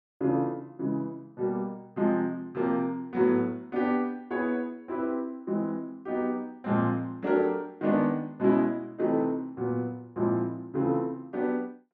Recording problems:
none

